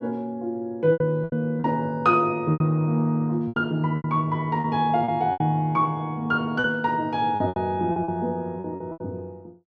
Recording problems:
packet loss; 11% of the sound replaced, filled with repeated pitch periods

